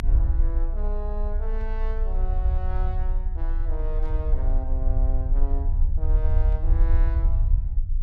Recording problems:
low-frequency rumble; below 60 Hz, strongest tone 28 Hz, SNR -13 dB
burst of static; at 1.5 s, at 4 s and at 6.5 s; peak -15 dB vs average level

